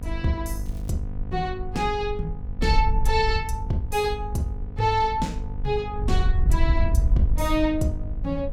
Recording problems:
electrical hum; 50 Hz, harmonics up to 750 Hz, SNR 11 dB
wind on the microphone; below 66 Hz, SNR 2 dB
crackling; at 0.5 s; loose cable, SNR 29 dB

